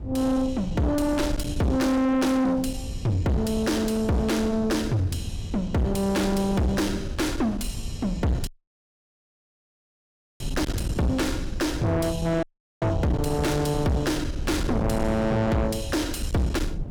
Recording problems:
distorted audio; soft clipping, signal-to-distortion ratio 6 dB
wind noise; below 180 Hz, SNR 8 dB
dropout; at 8.5 s for 2 s and at 12 s

